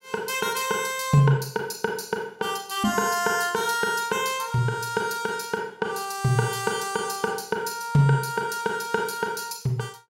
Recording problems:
none

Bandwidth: 16 kHz